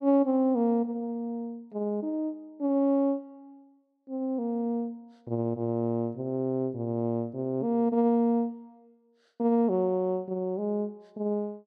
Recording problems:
none

